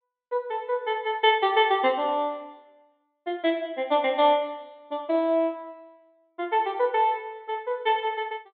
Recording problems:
treble cut off; nothing above 4 kHz

